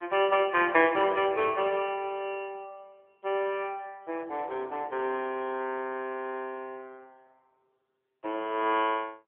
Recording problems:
phone line; 280 Hz to 3.4 kHz, AMR-NB

